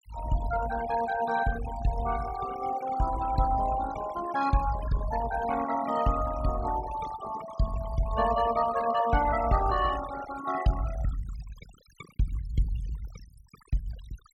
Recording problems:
noise reduction artefacts; signal-to-artefact ratio 12 dB

